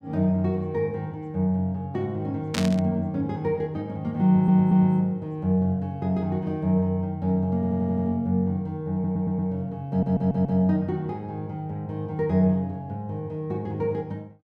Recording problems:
burst of static; at 2.5 s; peak 0 dB vs average level
stutter; 4 times, first at 4.5 s

